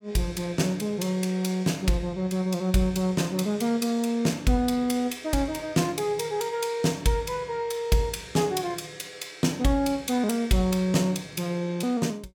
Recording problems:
none

